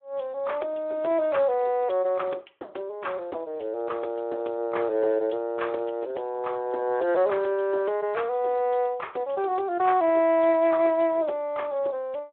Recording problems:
telephone audio; 280 Hz to 3.4 kHz, Speex

